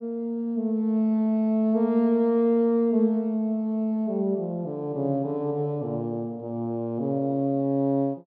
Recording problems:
treble cut off; nothing above 5.5 kHz

